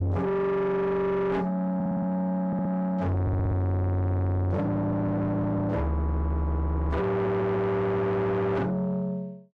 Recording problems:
distortion; soft clipping, signal-to-distortion ratio 7 dB
audio stuttering; 4 times, first at 2 s

